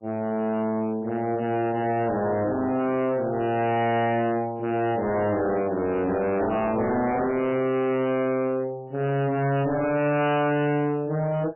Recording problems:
lossy codec; MP3, log-spectral distance 3 dB, nothing above 2.9 kHz
distorted audio; hard clipping, signal-to-distortion ratio 6 dB

